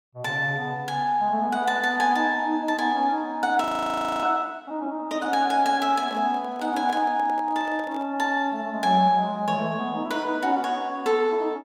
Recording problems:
audio freezing; at 3.5 s for 0.5 s
handling noise; from 6 to 8 s; peak -11 dB vs average level

